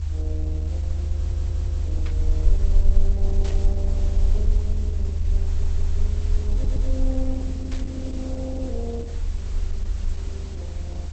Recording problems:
lossy codec; Opus, log-spectral distance 2 dB
background hiss; slope -1 dB per octave, SNR 10 dB
rumble; below 76 Hz, SNR -12 dB
stutter; at 1 s, at 5.5 s and at 6.5 s
burst of static; at 2 s, at 3.5 s and at 7.5 s; peak +2 dB vs average level

